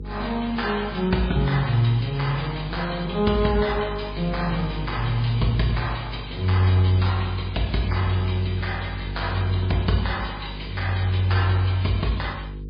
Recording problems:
codec artefacts; MP3, log-spectral distance 5 dB, nothing above 4.1 kHz
electrical hum; 50 Hz, harmonics up to 500 Hz, SNR 11 dB

